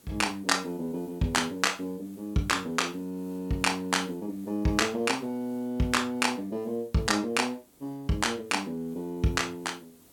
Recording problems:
hiss; SNR 27 dB

